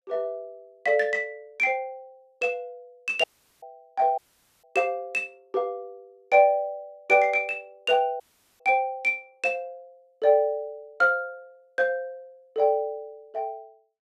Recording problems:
audio cutting out; at 3 s, at 4 s and at 8 s

